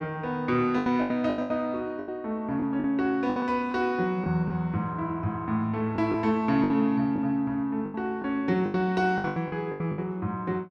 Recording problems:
packet loss; 11% of the sound replaced, filled with the last packet

